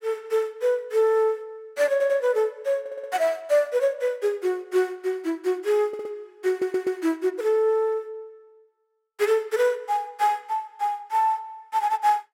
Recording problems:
audio stuttering; 4 times, first at 2 s

